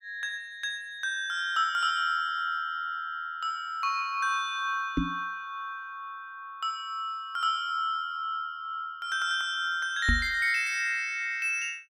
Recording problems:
microphone bump; at 5 s and at 10 s; peak +5 dB vs average level

